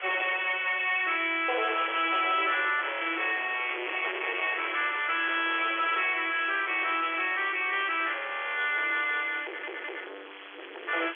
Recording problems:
telephone audio; 320 Hz to 3.6 kHz, G.711
distorted audio; hard clipping, signal-to-distortion ratio 7 dB
hiss; SNR 15 dB
stutter; at 9.5 s

